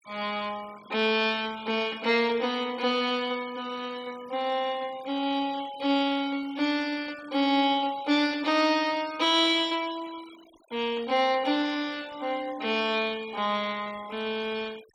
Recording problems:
denoising artefacts; signal-to-artefact ratio 21 dB

